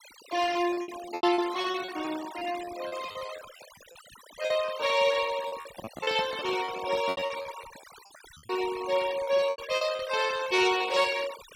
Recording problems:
denoising artefacts; signal-to-artefact ratio 14 dB
packet loss; 17% of the sound replaced, filled with repeated pitch periods
handling noise; from 5.5 to 7.5 s; peak -6 dB vs average level

